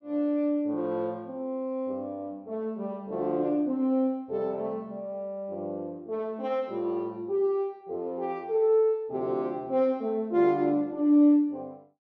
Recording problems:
none

